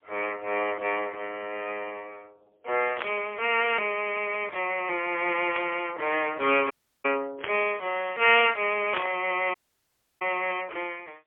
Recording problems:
telephone audio; 320 Hz to 3.2 kHz, AMR-NB, then MP3
burst of static; 4 times, first at 3 s; peak +1 dB vs average level
dropout; at 6.5 s and at 9.5 s for 0.5 s

